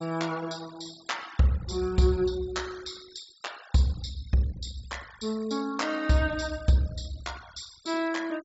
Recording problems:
low-pass filter; nothing above 8 kHz
noise reduction artefacts; signal-to-artefact ratio 20 dB

